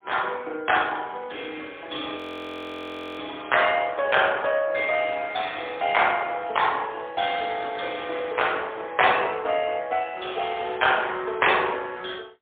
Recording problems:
telephone audio; 300 Hz to 3.5 kHz, AMR-NB, then MP3
frozen audio; at 2 s for 1 s

